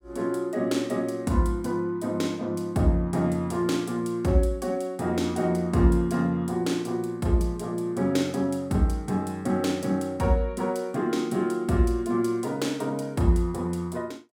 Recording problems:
none

